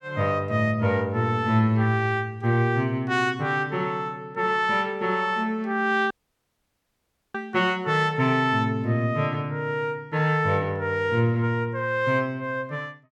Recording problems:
dropout; at 6 s for 1 s

